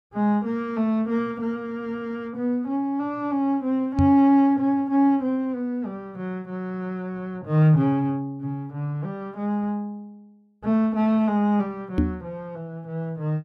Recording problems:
microphone thump; at 4 s and at 12 s; peak +6 dB vs average level

